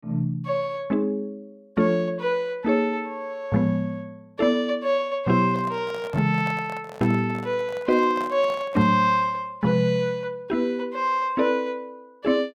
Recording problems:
microphone handling noise; from 5.5 to 9 s; peak -9 dB vs average level

